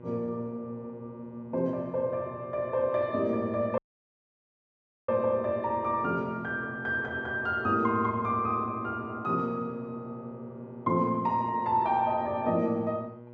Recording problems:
electrical hum; 60 Hz, harmonics up to 1.6 kHz, SNR 18 dB
audio cutting out; at 4 s for 1.5 s

